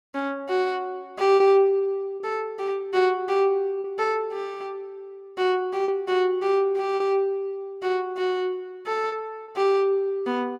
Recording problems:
packet loss; 3% of the sound replaced, filled with repeated pitch periods

